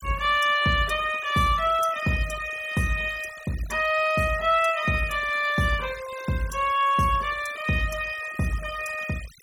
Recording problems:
noise reduction artefacts; signal-to-artefact ratio 18 dB

